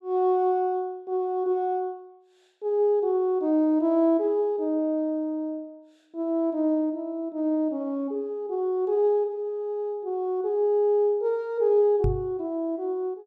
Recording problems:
microphone bump; at 12 s; peak +2 dB vs average level

